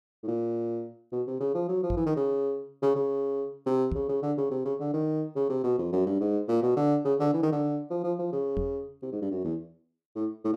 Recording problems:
knock on the microphone; at 2 s, at 4 s and at 8.5 s; peak 0 dB vs average level

